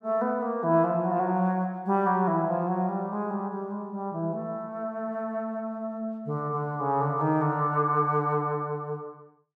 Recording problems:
none

